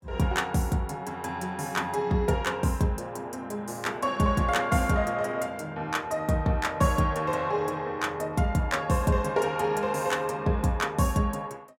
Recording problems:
none

